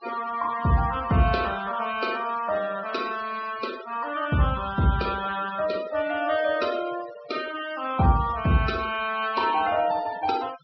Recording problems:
low-pass filter; nothing above 5.5 kHz
denoising artefacts; signal-to-artefact ratio 16 dB

